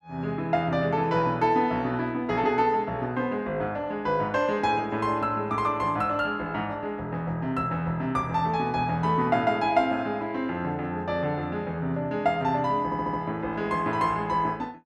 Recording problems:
audio stuttering; at 13 s

